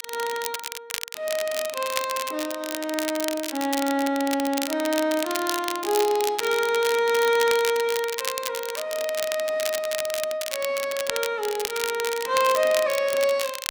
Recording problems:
crackle; vinyl, SNR 7 dB

